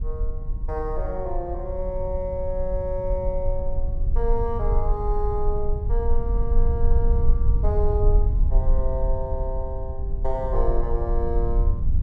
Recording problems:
rumble; below 54 Hz, strongest tone 22 Hz, SNR -3 dB

